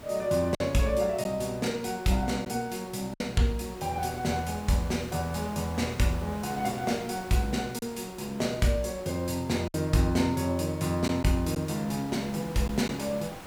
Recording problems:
electrical hum; 60 Hz, harmonics up to 2 kHz, SNR 27 dB
hiss; slope -5 dB per octave, SNR 17 dB
lost packets; 2% of the sound replaced, filled with silence

